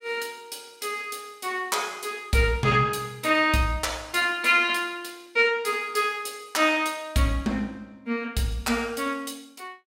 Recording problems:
none

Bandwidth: 16 kHz